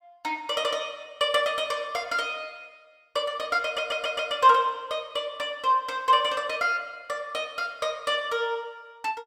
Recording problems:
stutter; at 3.5 s

